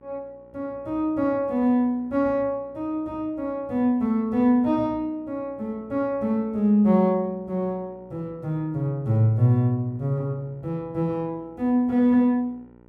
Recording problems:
hum; 60 Hz, harmonics up to 1.5 kHz, SNR 28 dB

